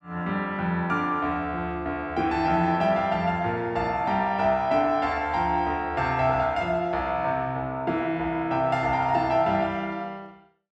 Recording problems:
none

